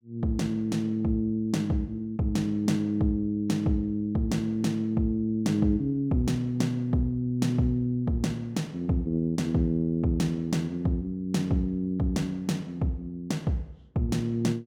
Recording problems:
none

